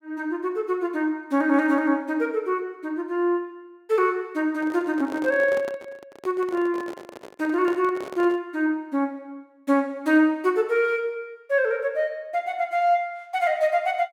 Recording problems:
microphone handling noise; from 4.5 to 8.5 s; peak -8 dB vs average level

